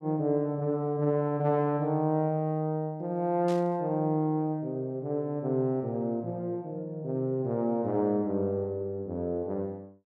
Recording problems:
static burst; at 3.5 s; peak -12 dB vs average level

